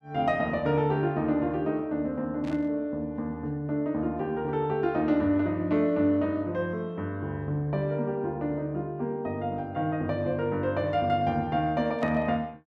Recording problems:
burst of static; at 2.5 s and at 12 s; peak -13 dB vs average level

